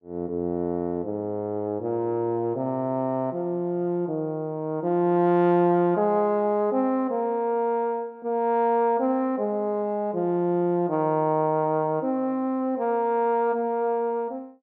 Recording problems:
none

